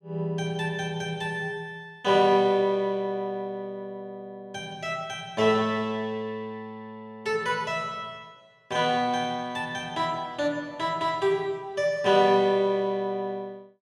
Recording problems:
none

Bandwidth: 13 kHz